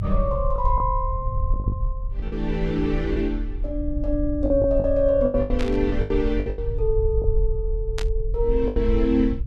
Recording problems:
low-frequency rumble; below 58 Hz, strongest tone 38 Hz, SNR 4 dB
lost packets; 9% of the sound replaced, filled with the last packet
burst of static; at 5.5 s and at 8 s; peak -4 dB vs average level

